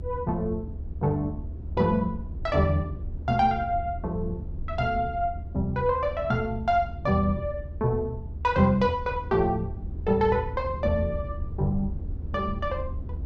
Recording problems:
low-frequency rumble; below 80 Hz, SNR 9 dB

